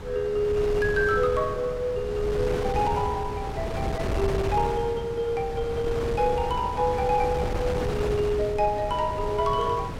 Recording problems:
wind on the microphone; below 500 Hz, SNR 6 dB

